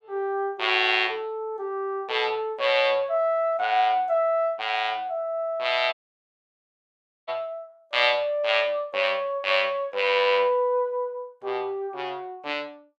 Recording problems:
audio cutting out; at 6 s for 1.5 s

